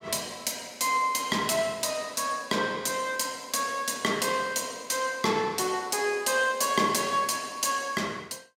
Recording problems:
none

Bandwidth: 16.5 kHz